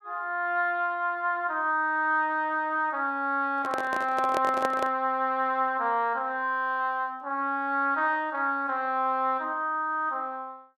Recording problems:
microphone handling noise; from 3.5 to 5 s; peak 0 dB vs average level

